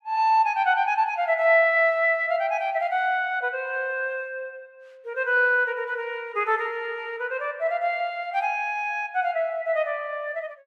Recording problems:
none

